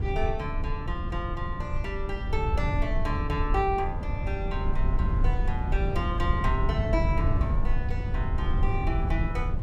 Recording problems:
rumble; below 90 Hz, SNR -3 dB

